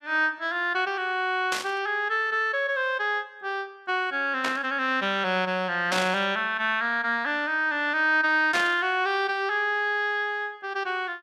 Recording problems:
burst of static; 4 times, first at 1.5 s; peak 0 dB vs average level

